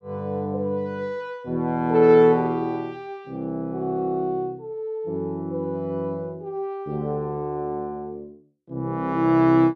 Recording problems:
none

